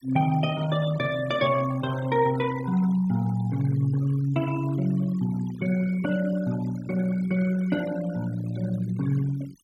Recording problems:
noise reduction artefacts; signal-to-artefact ratio 17 dB

